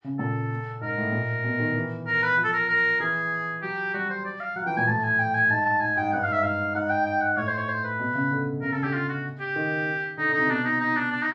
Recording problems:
none

